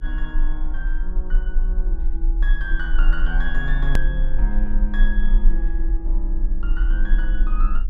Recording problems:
electrical hum; 60 Hz, harmonics up to 480 Hz, SNR 13 dB
rumble; below 34 Hz, strongest tone 22 Hz, SNR -9 dB
click at an edit; at 4 s

